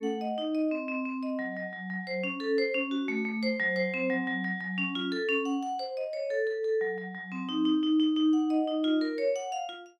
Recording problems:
none

